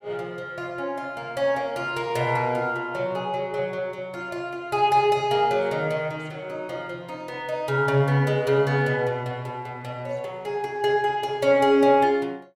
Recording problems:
none

